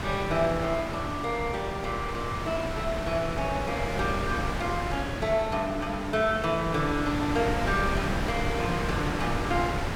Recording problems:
wind on the microphone; below 1.3 kHz, SNR 3 dB

